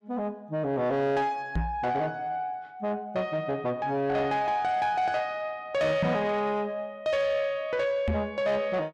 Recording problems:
distortion; soft clipping, signal-to-distortion ratio 12 dB
knock on the microphone; at 1.5 s, at 6 s and at 8 s; peak +5 dB vs average level

